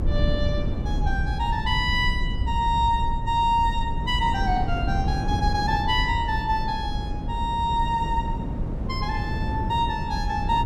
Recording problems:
low-frequency rumble; below 74 Hz, SNR 5 dB
wind noise; below 240 Hz, SNR 6 dB

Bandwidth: 14.5 kHz